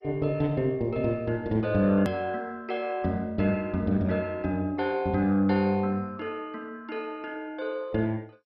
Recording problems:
lossy compression; MP2, log-spectral distance 2 dB, nothing above 13.1 kHz
edit click; at 2 s

